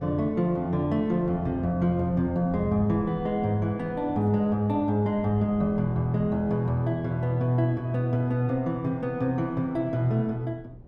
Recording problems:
wind on the microphone; below 250 Hz, SNR 20 dB

